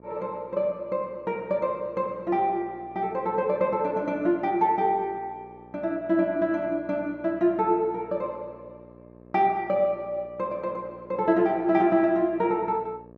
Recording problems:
hum; 60 Hz, harmonics up to 1.3 kHz, SNR 24 dB

